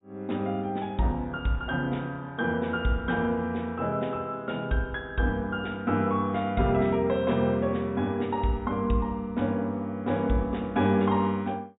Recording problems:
low-pass filter; nothing above 4 kHz

